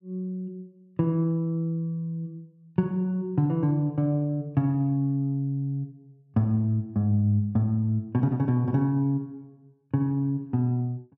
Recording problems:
none

